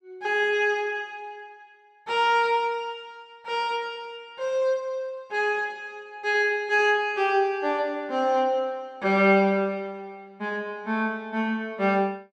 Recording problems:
none

